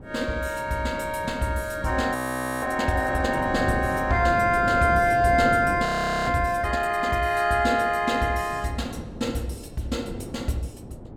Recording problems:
wind on the microphone; below 410 Hz, SNR 12 dB
audio freezing; at 2 s and at 6 s

